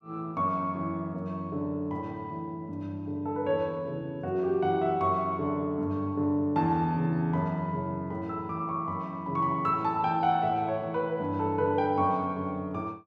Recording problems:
none

